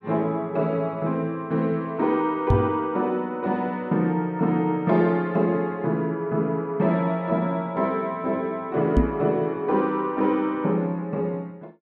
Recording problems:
knock on the microphone; at 2.5 s and at 9 s; peak +7 dB vs average level

